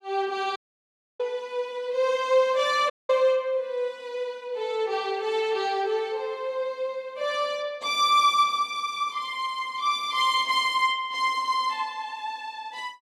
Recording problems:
audio cutting out; at 0.5 s for 0.5 s and at 3 s

